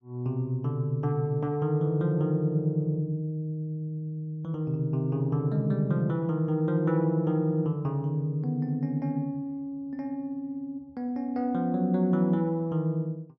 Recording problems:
none

